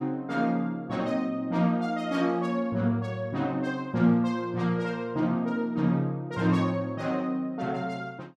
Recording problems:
none

